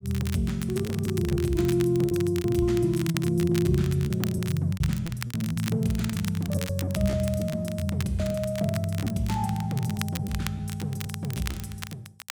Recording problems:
crackling; vinyl, SNR 13 dB
lost packets; 9% of the sound replaced, filled with repeated pitch periods

